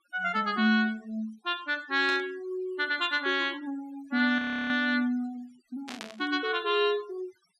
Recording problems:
noise reduction artefacts; signal-to-artefact ratio 23 dB
static burst; at 2 s and at 6 s; peak -6 dB vs average level
audio freezing; at 4.5 s

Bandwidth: 12.5 kHz